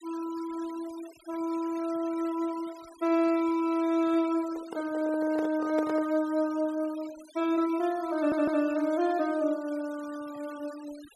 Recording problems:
denoising artefacts; signal-to-artefact ratio 20 dB
handling noise; from 4.5 to 6 s; peak -3 dB vs average level
stutter; at 8 s

